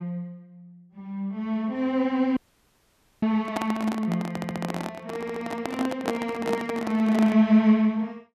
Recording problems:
audio cutting out; at 2.5 s for 1 s
handling noise; from 3.5 to 7.5 s; peak +2 dB vs average level
stutter; at 4.5 s and at 5 s

